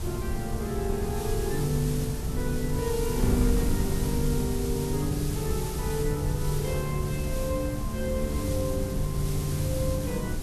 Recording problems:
background hiss; slope +2 dB per octave, SNR 9 dB
wind on the microphone; below 130 Hz, SNR 1 dB

